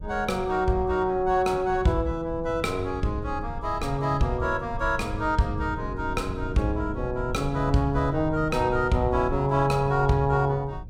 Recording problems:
low-frequency rumble; below 120 Hz, SNR 11 dB

